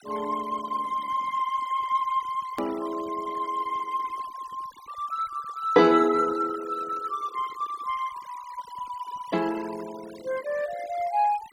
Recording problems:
noise reduction artefacts; signal-to-artefact ratio 20 dB
click at an edit; at 2.5 s

